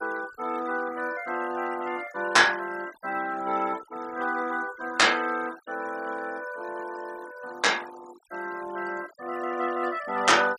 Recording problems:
denoising artefacts; signal-to-artefact ratio 18 dB

